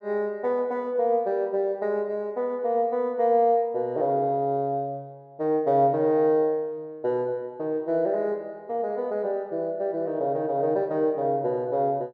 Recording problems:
none

